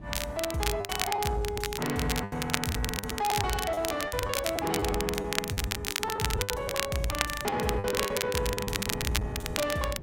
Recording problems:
distorted audio; soft clipping, signal-to-distortion ratio 11 dB
wind on the microphone; below 280 Hz, SNR 13 dB
crackling; vinyl, SNR 2 dB
lost packets; 14% of the sound replaced, filled with the last packet

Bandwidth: 16 kHz